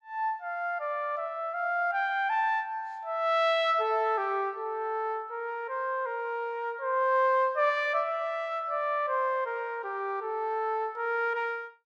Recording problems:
none

